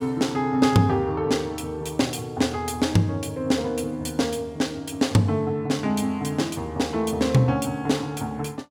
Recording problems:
none

